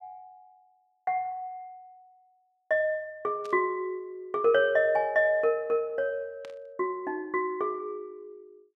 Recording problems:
burst of static; at 3.5 s and at 6.5 s; peak -15 dB vs average level

